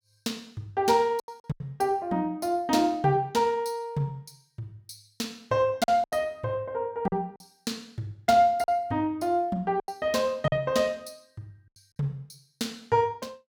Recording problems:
packet loss; 5% of the sound replaced, filled with silence

